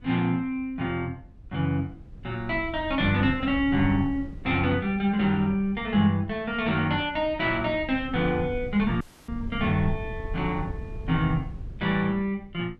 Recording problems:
wind on the microphone; below 110 Hz, SNR 14 dB
dropout; at 9 s

